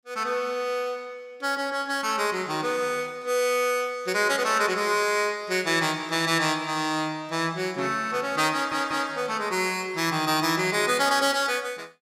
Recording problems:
stutter; at 8.5 s

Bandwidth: 15.5 kHz